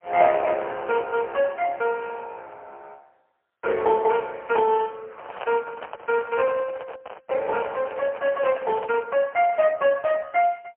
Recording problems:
telephone audio; 370 Hz to 2.3 kHz, AMR-NB, then MP3
handling noise; from 5 to 9 s; peak -4 dB vs average level

